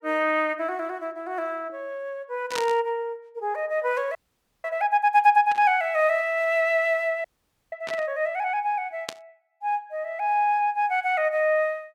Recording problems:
burst of static; 4 times, first at 2.5 s; peak -3 dB vs average level
audio freezing; at 4 s and at 7.5 s

